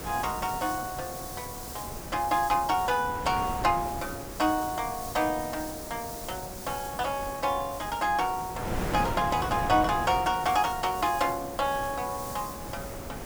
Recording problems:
background hiss; SNR 13 dB
wind noise; below 760 Hz, SNR 10 dB

